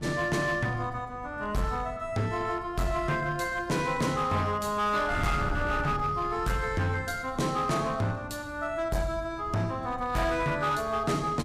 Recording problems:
distorted audio; hard clipping, signal-to-distortion ratio 10 dB
wind on the microphone; below 200 Hz, SNR 14 dB

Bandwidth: 15 kHz